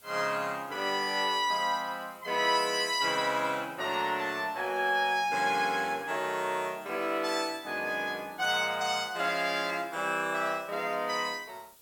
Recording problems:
background hiss; SNR 25 dB

